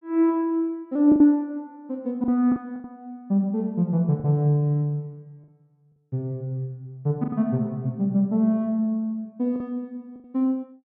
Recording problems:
lost packets; 5% of the sound replaced, filled with the last packet

